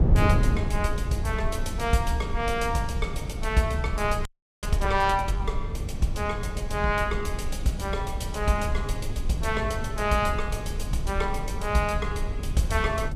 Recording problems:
rumble; below 66 Hz, SNR 6 dB
wind noise; below 190 Hz, SNR 7 dB
audio freezing; at 4.5 s

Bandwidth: 15.5 kHz